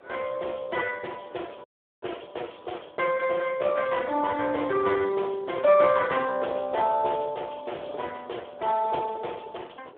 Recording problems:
phone line; 340 Hz to 2 kHz, Speex
wind on the microphone; below 720 Hz, SNR 20 dB
audio cutting out; at 1.5 s

